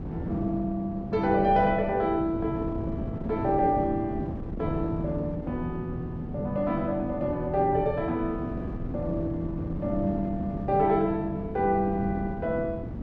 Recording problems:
wind on the microphone; below 290 Hz, SNR 7 dB

